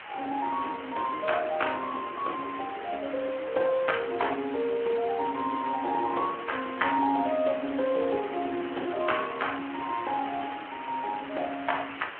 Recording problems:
phone line; 240 Hz to 3.2 kHz, Speex
hiss; SNR 12 dB

